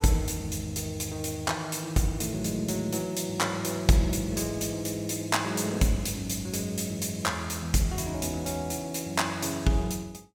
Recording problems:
none

